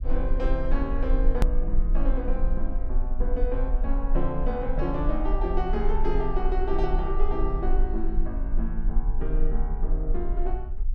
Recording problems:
low-frequency rumble; below 36 Hz, strongest tone 18 Hz, SNR -2 dB
edit click; at 1.5 s

